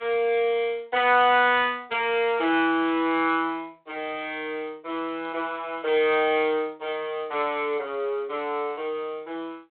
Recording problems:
telephone audio; 300 Hz to 3.7 kHz, G.726

